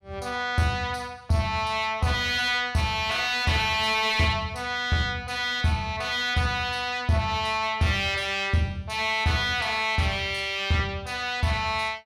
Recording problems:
distorted audio; soft clipping, signal-to-distortion ratio 11 dB

